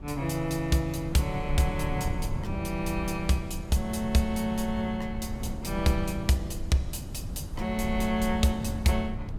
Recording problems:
wind on the microphone; below 130 Hz, SNR 7 dB

